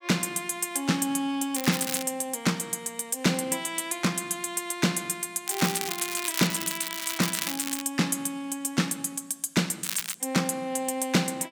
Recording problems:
crackle; at 1.5 s, from 5.5 to 8 s and at 10 s; loose cable, SNR 4 dB

